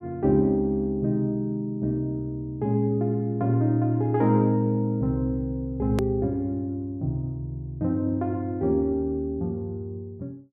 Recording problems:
edit click; at 6 s

